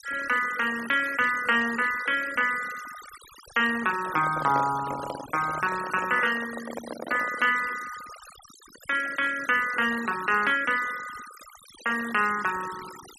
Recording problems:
denoising artefacts; signal-to-artefact ratio 14 dB
handling noise; from 4 to 7.5 s; peak -4 dB vs average level

